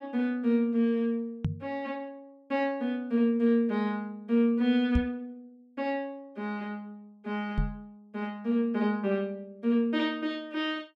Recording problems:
microphone bump; at 1.5 s, at 5 s and at 7.5 s; peak +5 dB vs average level

